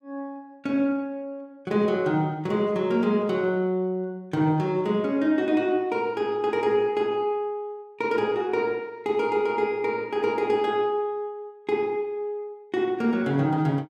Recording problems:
none

